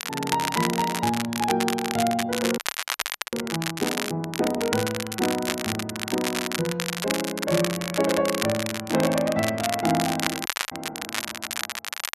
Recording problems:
crackling; vinyl, SNR 3 dB
frozen audio; at 2.5 s for 1 s and at 10 s

